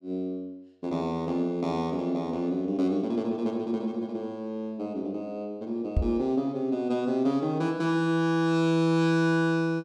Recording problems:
microphone thump; at 6 s; peak +5 dB vs average level

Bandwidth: 13 kHz